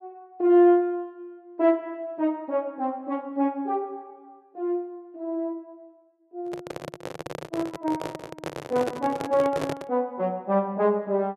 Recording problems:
microphone handling noise; from 6.5 to 10 s; peak 0 dB vs average level

